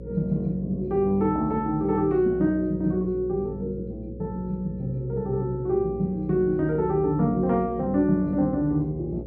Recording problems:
electrical hum; 60 Hz, harmonics up to 540 Hz, SNR 14 dB

